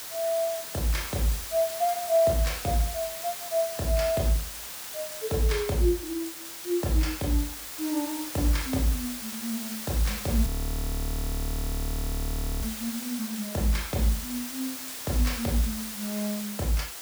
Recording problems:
background hiss; slope 0 dB per octave, SNR 6 dB
audio freezing; at 10 s for 2 s

